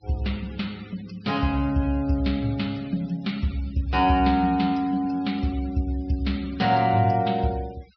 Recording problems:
treble cut off; nothing above 5.5 kHz
denoising artefacts; signal-to-artefact ratio 23 dB

